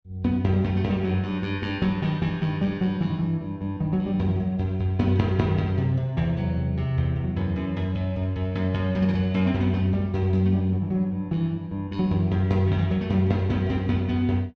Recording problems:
none

